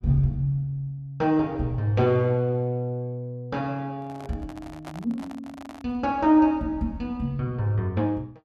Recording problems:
handling noise; from 4 to 6 s; peak -9 dB vs average level

